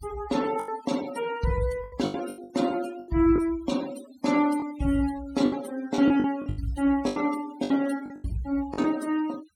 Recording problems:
noise reduction artefacts; signal-to-artefact ratio 16 dB
lost packets; 11% of the sound replaced, filled with the last packet

